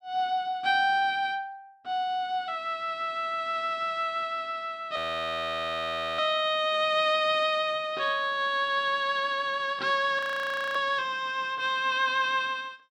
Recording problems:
frozen audio; at 5 s for 1 s and at 10 s for 0.5 s

